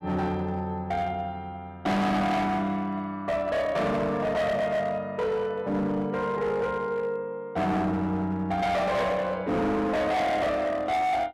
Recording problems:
distorted audio; hard clipping, signal-to-distortion ratio 7 dB

